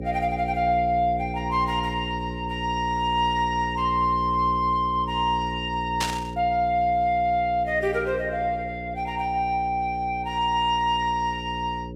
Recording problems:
hum; 60 Hz, harmonics up to 540 Hz, SNR 10 dB
static burst; at 6 s; peak +2 dB vs average level

